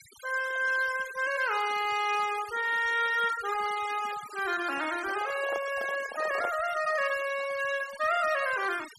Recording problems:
denoising artefacts; signal-to-artefact ratio 14 dB
handling noise; from 5 to 6.5 s; peak -3 dB vs average level

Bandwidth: 12.5 kHz